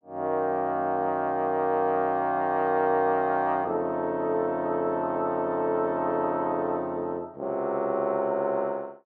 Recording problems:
none

